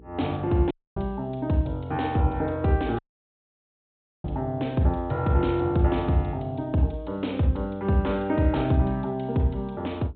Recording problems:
treble missing; nothing above 4 kHz
hum; 60 Hz, harmonics up to 480 Hz, SNR 26 dB
dropout; at 0.5 s and at 3 s for 1.5 s

